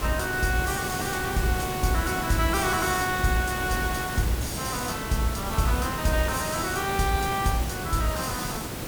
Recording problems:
hiss; slope -4 dB per octave, SNR 5 dB

